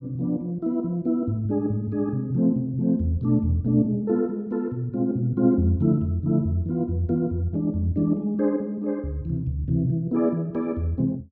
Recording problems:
none

